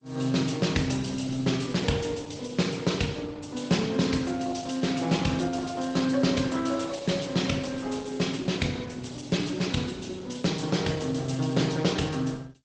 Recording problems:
codec artefacts; G.722, then Opus, log-spectral distance 6 dB, nothing above 8 kHz

